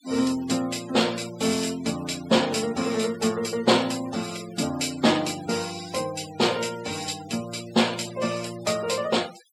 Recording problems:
denoising artefacts; signal-to-artefact ratio 16 dB

